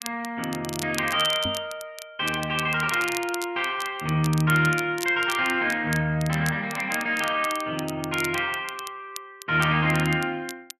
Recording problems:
crackling; vinyl, SNR 14 dB
microphone bump; at 1.5 s; peak -5 dB vs average level

